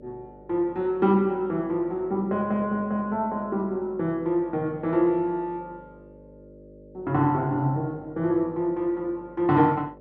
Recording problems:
hum; 50 Hz, harmonics up to 600 Hz, SNR 23 dB

